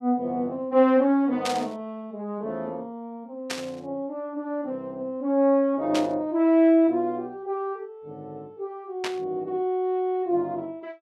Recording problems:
burst of static; 4 times, first at 1.5 s; peak -1 dB vs average level

